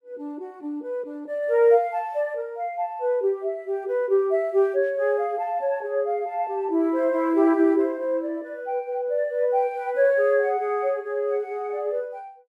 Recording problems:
none

